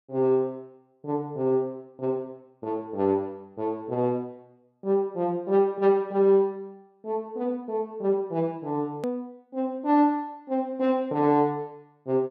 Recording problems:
edit click; at 9 s

